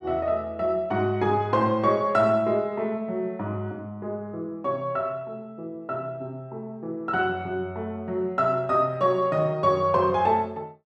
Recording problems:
none

